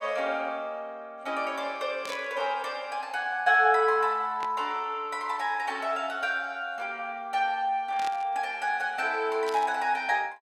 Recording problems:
burst of static; 4 times, first at 2 s; peak -7 dB vs average level

